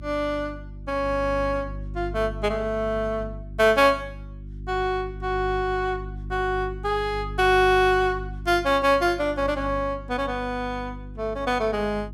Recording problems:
hum; 50 Hz, harmonics up to 350 Hz, SNR 13 dB

